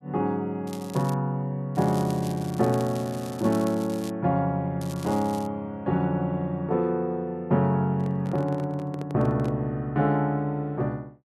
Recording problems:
crackle; at 0.5 s, from 2 to 4 s and at 5 s; loose cable, SNR 18 dB
handling noise; from 8 to 9.5 s; peak -9 dB vs average level

